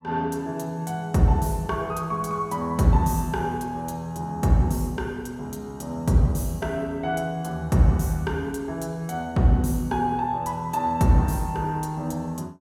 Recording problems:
none

